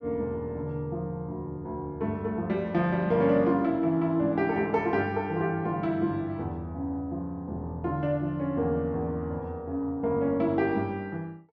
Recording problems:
none

